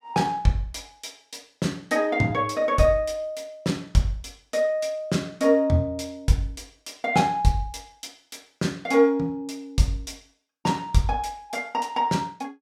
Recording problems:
none

